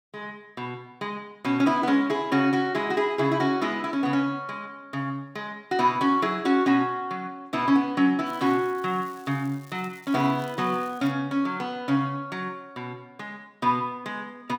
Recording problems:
crackling; from 8.5 to 11 s; loose cable, SNR 27 dB

